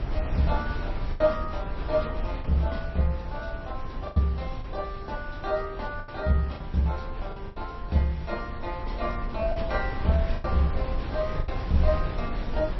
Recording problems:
lossy compression; MP3, then MP3, log-spectral distance 2 dB, nothing above 4.9 kHz
wind on the microphone; below 86 Hz, SNR 5 dB
lost packets; 5% of the sound replaced, filled with the last packet

